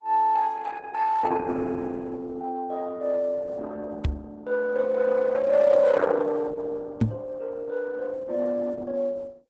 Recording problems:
lossy codec; Opus, then Opus, log-spectral distance 3 dB, nothing above 8 kHz
knock on the microphone; at 4 s and at 7 s; peak +8 dB vs average level

